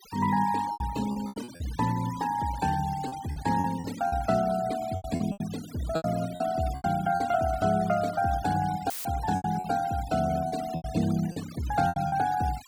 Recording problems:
denoising artefacts; signal-to-artefact ratio 16 dB
packet loss; 11% of the sound replaced, filled with repeated pitch periods
audio cutting out; at 9 s; filled with static

